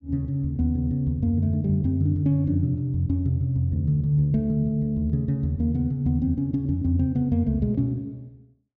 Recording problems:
none

